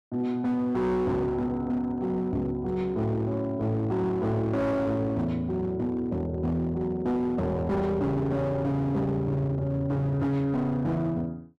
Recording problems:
distorted audio; hard clipping, signal-to-distortion ratio 10 dB

